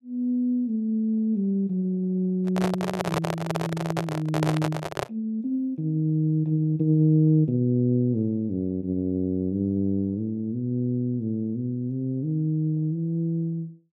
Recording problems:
handling noise; from 2.5 to 5 s; peak +2 dB vs average level

